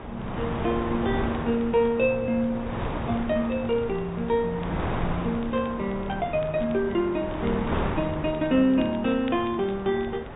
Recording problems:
low-pass filter; nothing above 4 kHz
wind on the microphone; below 940 Hz, SNR 7 dB
crackle; vinyl, SNR 27 dB

